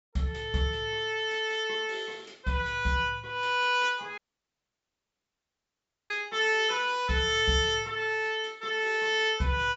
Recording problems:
treble missing; nothing above 8 kHz
audio cutting out; at 4 s for 2 s

